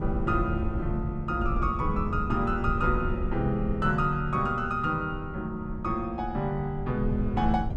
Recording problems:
rumble; below 120 Hz, SNR 5 dB

